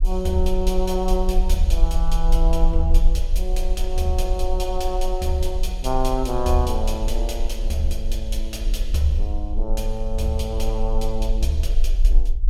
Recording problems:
rumble; below 40 Hz, strongest tone 24 Hz, SNR 0 dB

